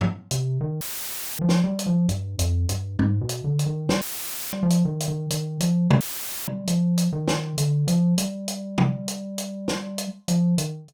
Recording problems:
audio cutting out; at 1 s for 0.5 s, at 4 s for 0.5 s and at 6 s; filled with static

